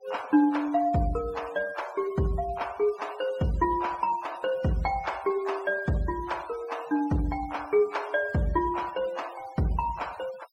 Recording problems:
denoising artefacts; signal-to-artefact ratio 20 dB

